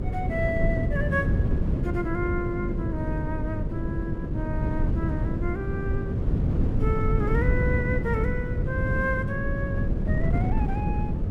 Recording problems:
hum; 50 Hz, harmonics up to 550 Hz, SNR 6 dB
wind on the microphone; below 170 Hz, SNR -4 dB

